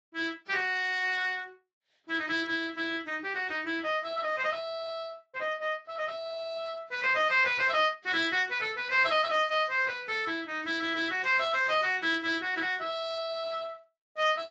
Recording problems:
lossy compression; Speex, then AAC, log-spectral distance 5 dB, nothing above 7.3 kHz

